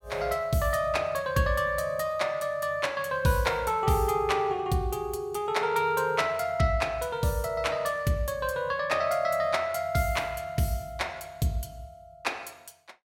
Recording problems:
none

